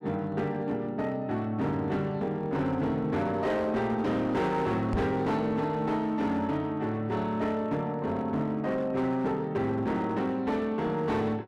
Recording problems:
distortion; hard clipping, signal-to-distortion ratio 11 dB
microphone thump; at 5 s; peak +1 dB vs average level

